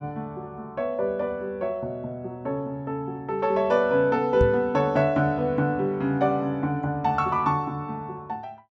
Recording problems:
knock on the microphone; at 4.5 s; peak +3 dB vs average level

